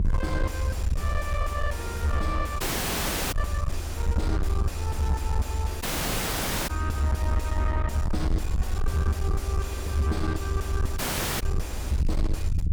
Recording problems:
distorted audio; soft clipping, signal-to-distortion ratio 5 dB
rumble; below 80 Hz, SNR -2 dB
audio cutting out; at 2.5 s for 0.5 s, at 6 s for 1 s and at 11 s

